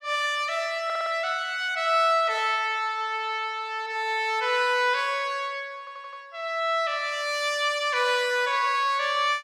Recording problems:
audio stuttering; at 1 s and at 6 s

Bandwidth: 15.5 kHz